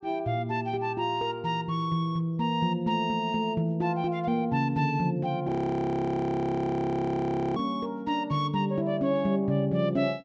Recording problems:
treble missing; nothing above 8 kHz
audio freezing; at 5.5 s for 2 s

